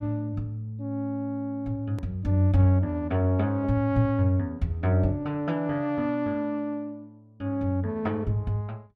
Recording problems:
click at an edit; at 2 s

